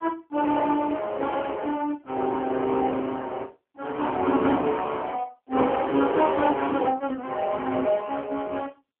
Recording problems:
telephone audio; 240 Hz to 3.2 kHz, AMR-NB

